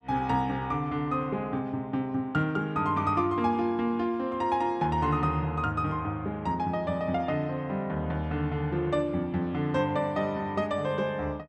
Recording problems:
none

